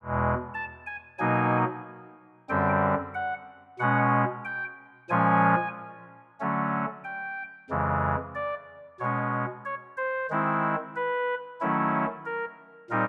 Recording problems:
none

